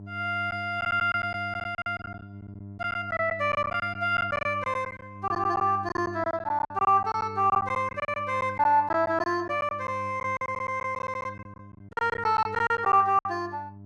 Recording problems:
hum; 50 Hz, harmonics up to 700 Hz, SNR 17 dB
packet loss; 14% of the sound replaced, filled with silence

